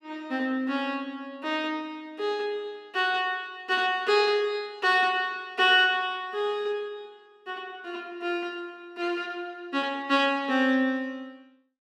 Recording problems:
none

